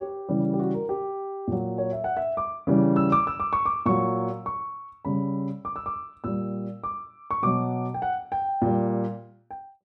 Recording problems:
none

